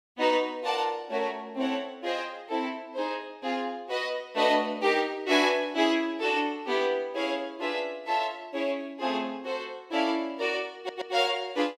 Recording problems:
audio stuttering; at 11 s

